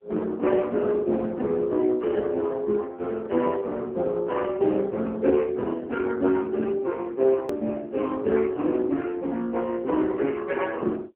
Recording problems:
phone line; 240 Hz to 2.8 kHz, AMR-NB
edit click; at 7.5 s

